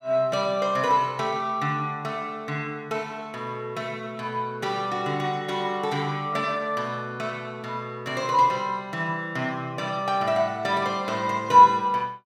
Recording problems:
none

